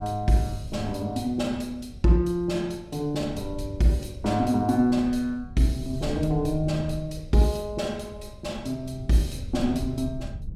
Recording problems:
low-frequency rumble; below 110 Hz, SNR 14 dB

